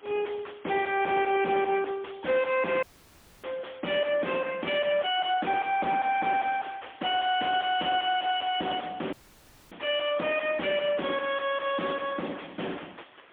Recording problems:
phone line; 300 Hz to 3.4 kHz, AMR-NB, then MP3
distorted audio; soft clipping, signal-to-distortion ratio 5 dB
hiss; SNR 18 dB
dropout; at 3 s for 0.5 s and at 9 s for 0.5 s

